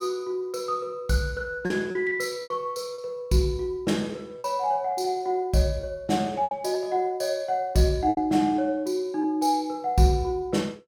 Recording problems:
packet loss; 5% of the sound replaced, filled with repeated pitch periods

